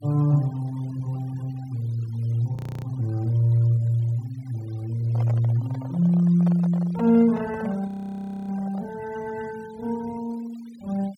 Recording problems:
noise reduction artefacts; signal-to-artefact ratio 25 dB
audio freezing; at 2.5 s and at 8 s for 0.5 s
handling noise; from 5 to 9 s; peak -8 dB vs average level

